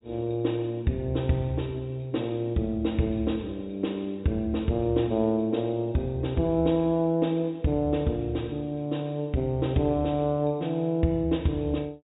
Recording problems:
treble cut off; nothing above 4 kHz

